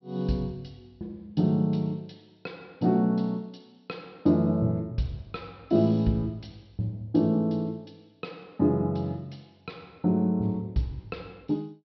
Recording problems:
treble cut off; nothing above 5.5 kHz

